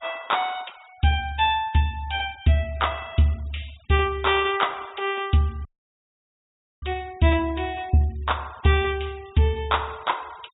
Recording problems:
treble cut off; nothing above 4 kHz
noise reduction artefacts; signal-to-artefact ratio 26 dB
audio cutting out; at 5.5 s for 1 s

